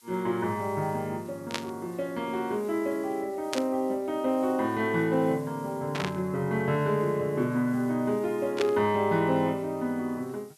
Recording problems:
background hiss; SNR 26 dB
burst of static; 4 times, first at 1.5 s; peak +2 dB vs average level

